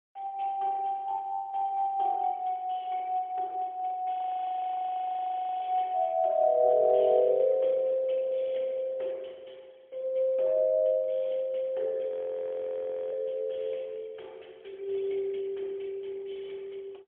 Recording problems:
phone line; 300 Hz to 3.4 kHz, AMR-NB, then MP3
frozen audio; at 4 s for 1.5 s and at 12 s for 1 s

